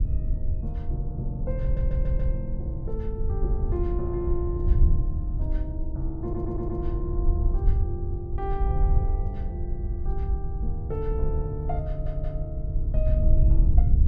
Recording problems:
rumble; below 70 Hz, SNR -6 dB
stutter; at 1.5 s, at 6 s and at 12 s

